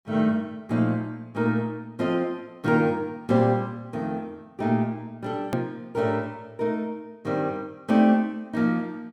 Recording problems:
edit click; at 5.5 s

